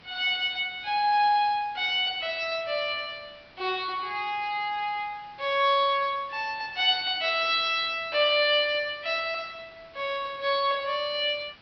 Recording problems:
treble missing; nothing above 5.5 kHz
background hiss; SNR 27 dB

